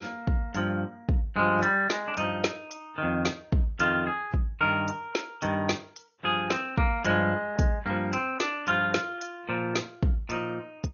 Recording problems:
lossy codec; AAC, then MP2, log-spectral distance 4 dB, nothing above 6.7 kHz

